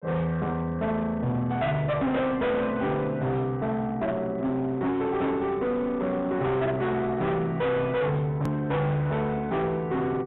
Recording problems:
treble missing; nothing above 3.8 kHz
distorted audio; hard clipping, uneven, signal-to-distortion ratio 7 dB
click at an edit; at 8.5 s

